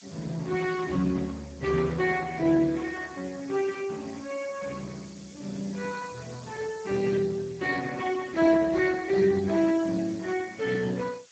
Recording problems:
lossy codec; Speex, log-spectral distance 8 dB
background hiss; slope +3 dB per octave, SNR 24 dB

